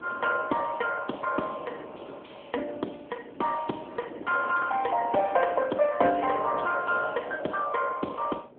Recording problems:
telephone audio; 300 Hz to 3.4 kHz, AMR-NB
wind on the microphone; below 570 Hz, SNR 18 dB

